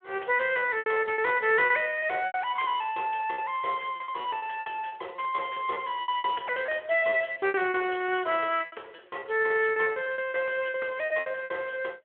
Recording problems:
phone line; 320 Hz to 3.3 kHz, Speex
lost packets; 18% of the sound replaced, filled with repeated pitch periods

